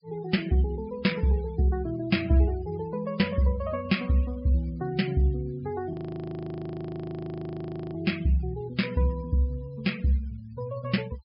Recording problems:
low-pass filter; nothing above 5.5 kHz
denoising artefacts; signal-to-artefact ratio 20 dB
frozen audio; at 6 s for 2 s

